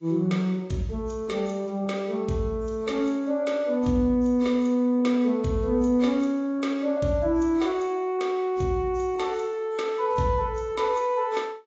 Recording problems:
lossy codec; AAC, log-spectral distance 2 dB, nothing above 7.3 kHz

